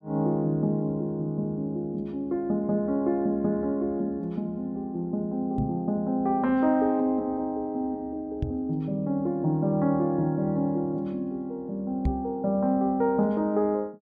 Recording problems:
knock on the microphone; at 5.5 s, at 8.5 s and at 12 s; peak +4 dB vs average level

